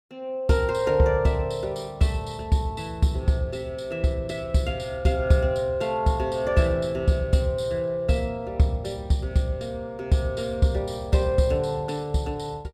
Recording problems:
none

